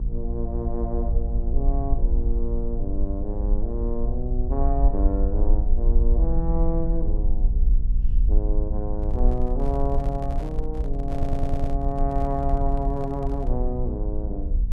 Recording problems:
electrical hum; 60 Hz, harmonics up to 540 Hz, SNR 8 dB
rumble; below 50 Hz, SNR -4 dB
handling noise; from 9 to 14 s; peak -7 dB vs average level
audio stuttering; at 11 s

